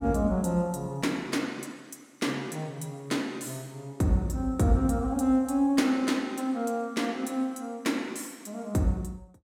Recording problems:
none

